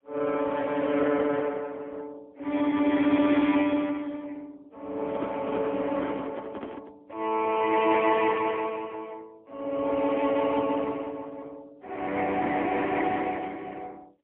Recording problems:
telephone audio; 220 Hz to 3.3 kHz, AMR-NB, then MP3
handling noise; from 5 to 7 s; peak -2 dB vs average level

